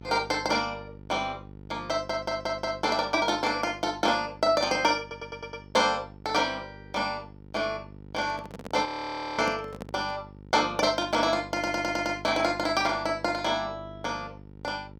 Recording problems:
hum; 50 Hz, harmonics up to 1 kHz, SNR 19 dB
stutter; at 2 s, at 5 s and at 12 s
handling noise; from 8 to 10 s; peak -4 dB vs average level
audio freezing; at 9 s for 0.5 s

